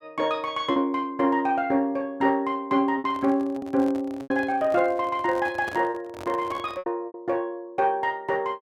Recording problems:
packet loss; 5% of the sound replaced, filled with repeated pitch periods
microphone handling noise; from 3 to 7 s; peak -8 dB vs average level

